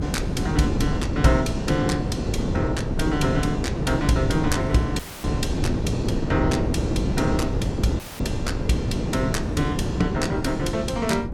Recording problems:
hum; 60 Hz, harmonics up to 360 Hz, SNR 16 dB
wind on the microphone; below 330 Hz, SNR 0 dB
dropout; at 5 s and at 8 s

